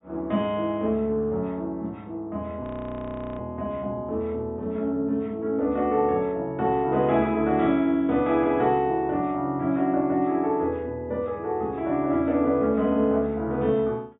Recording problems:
low-pass filter; nothing above 4 kHz
audio freezing; at 2.5 s for 1 s

